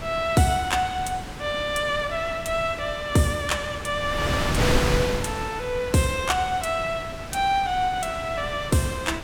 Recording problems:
wind noise; below 1.4 kHz, SNR 6 dB

